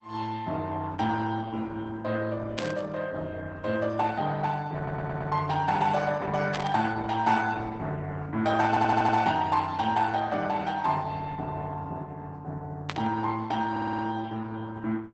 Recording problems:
codec artefacts; Opus, log-spectral distance 3 dB, nothing above 8 kHz
static burst; at 2.5 s, at 6.5 s and at 13 s; peak 0 dB vs average level
stutter; at 5 s, at 8.5 s and at 14 s

